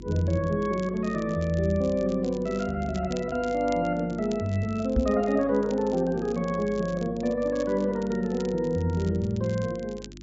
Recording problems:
treble cut off; nothing above 8 kHz
hum; 50 Hz, harmonics up to 350 Hz, SNR 17 dB
crackle; vinyl, SNR 23 dB
microphone thump; at 5 s; peak +6 dB vs average level

